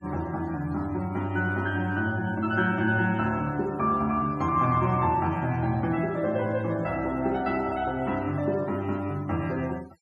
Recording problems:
denoising artefacts; signal-to-artefact ratio 24 dB

